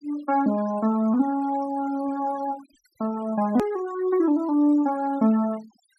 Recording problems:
noise reduction artefacts; signal-to-artefact ratio 22 dB
click at an edit; at 3.5 s

